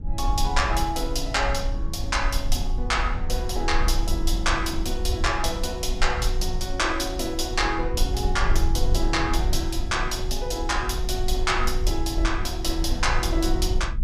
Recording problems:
rumble; below 50 Hz, strongest tone 20 Hz, SNR 3 dB

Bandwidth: 15 kHz